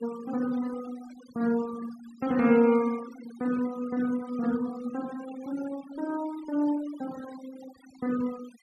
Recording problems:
denoising artefacts; signal-to-artefact ratio 18 dB

